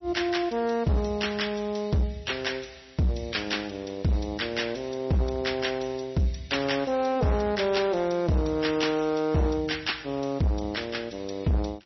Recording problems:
lossy compression; MP3, log-spectral distance 6 dB, nothing above 5.8 kHz
distorted audio; hard clipping, signal-to-distortion ratio 12 dB

